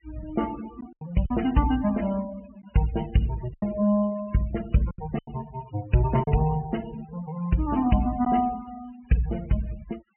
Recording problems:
treble missing; nothing above 3 kHz
noise reduction artefacts; signal-to-artefact ratio 17 dB
packet loss; 4% of the sound replaced, filled with silence

